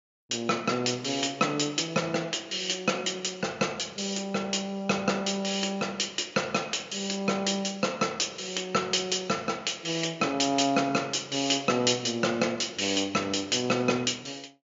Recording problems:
low-pass filter; nothing above 7.3 kHz

